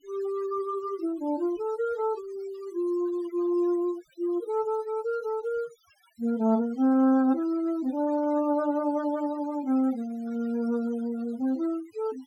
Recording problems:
noise reduction artefacts; signal-to-artefact ratio 22 dB

